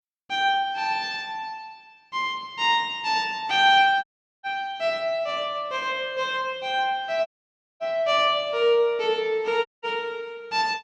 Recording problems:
audio cutting out; at 4 s, at 7.5 s for 0.5 s and at 9.5 s

